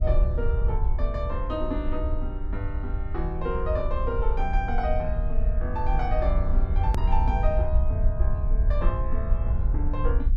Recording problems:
low-frequency rumble; below 64 Hz, SNR -4 dB
hard cut with a click; at 7 s

